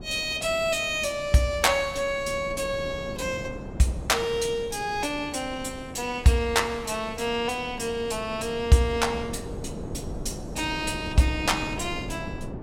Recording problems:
wind noise; below 400 Hz, SNR 12 dB

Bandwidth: 16.5 kHz